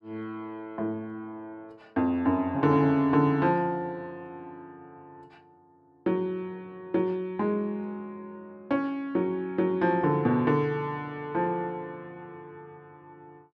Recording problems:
none

